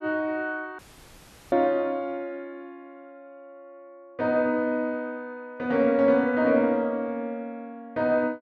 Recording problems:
audio cutting out; at 1 s for 0.5 s

